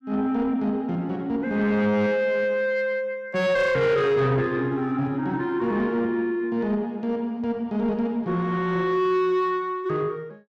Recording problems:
distortion; soft clipping, signal-to-distortion ratio 12 dB

